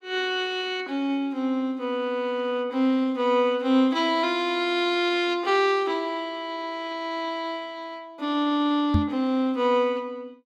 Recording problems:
knock on the microphone; at 9 s; peak +6 dB vs average level

